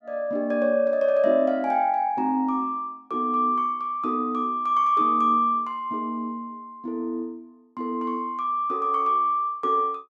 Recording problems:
none

